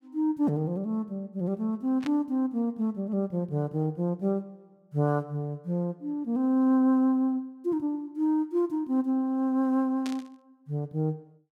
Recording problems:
burst of static; at 2 s and at 10 s; peak -8 dB vs average level

